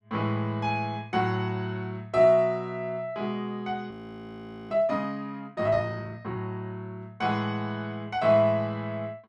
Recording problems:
audio freezing; at 4 s for 1 s

